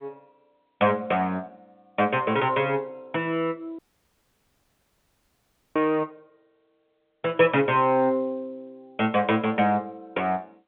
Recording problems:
phone line; 240 Hz to 3.3 kHz, G.711
dropout; at 4 s for 2 s
burst of static; at 6 s; peak -18 dB vs average level

